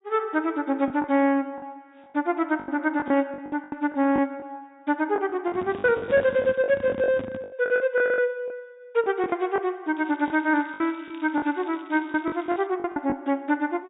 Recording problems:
treble missing; nothing above 4 kHz
packet loss; 11% of the sound replaced, filled with the last packet
microphone handling noise; from 5.5 to 7.5 s; peak -6 dB vs average level
crackle; at 5.5 s and from 10 to 13 s; loose cable, SNR 27 dB

